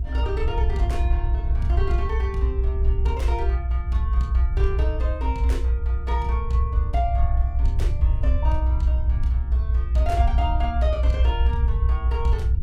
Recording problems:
electrical hum; 50 Hz, harmonics up to 500 Hz, SNR 18 dB
rumble; below 64 Hz, strongest tone 62 Hz, SNR -8 dB

